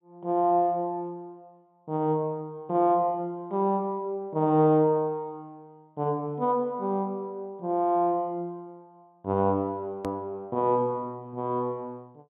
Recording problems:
treble cut off; nothing above 4 kHz
hard cut with a click; at 10 s

